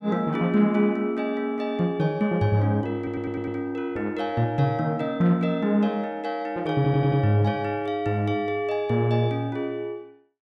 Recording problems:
audio stuttering; at 3 s and at 7 s

